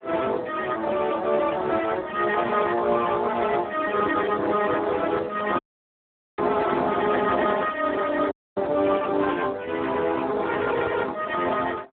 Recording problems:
phone line; 240 Hz to 3.5 kHz, Speex
dropout; at 5.5 s for 1 s and at 8.5 s

